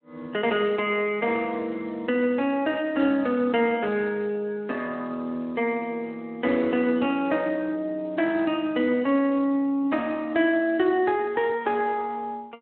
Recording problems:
phone line; 220 Hz to 3.3 kHz, Speex

